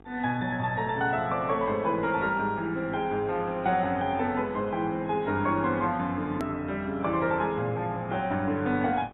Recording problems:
lossy compression; AAC, log-spectral distance 2 dB, nothing above 13.1 kHz
hum; 50 Hz, harmonics up to 1.6 kHz, SNR 24 dB
hard cut with a click; at 6.5 s

